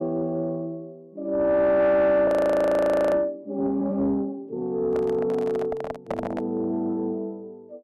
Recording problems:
distortion; soft clipping, signal-to-distortion ratio 9 dB
frozen audio; at 2.5 s for 1 s
microphone handling noise; from 5 to 6.5 s; peak -2 dB vs average level

